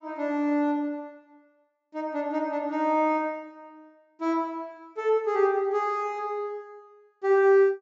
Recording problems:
treble cut off; nothing above 8 kHz

